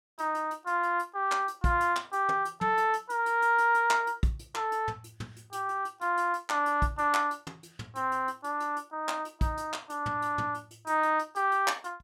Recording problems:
none

